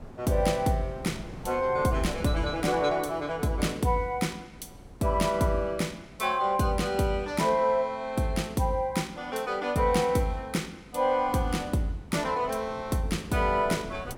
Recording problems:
wind noise; below 400 Hz, SNR 19 dB

